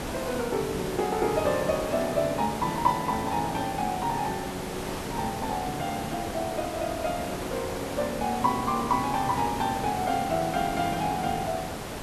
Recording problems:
hiss; slope -5 dB per octave, SNR 5 dB

